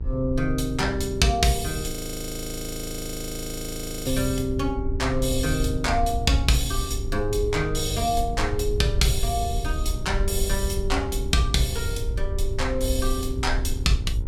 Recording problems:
electrical hum; 60 Hz, harmonics up to 1.4 kHz, SNR 17 dB
rumble; below 74 Hz, SNR 5 dB
frozen audio; at 2 s for 2 s

